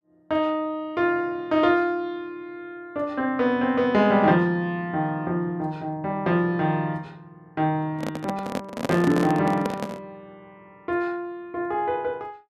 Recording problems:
microphone handling noise; from 8 to 10 s; peak +1 dB vs average level

